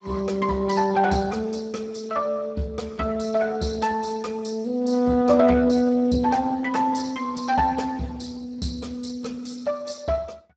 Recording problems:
lossy codec; Speex, log-spectral distance 5 dB, nothing above 7.6 kHz

